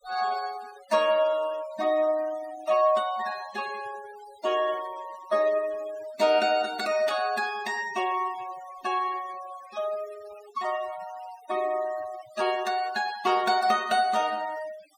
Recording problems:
denoising artefacts; signal-to-artefact ratio 17 dB

